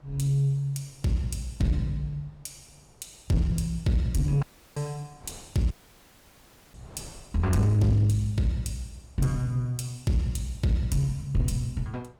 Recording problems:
distortion; soft clipping, signal-to-distortion ratio 11 dB
wind noise; below 590 Hz, SNR 28 dB
dropout; at 4.5 s and at 5.5 s for 1 s

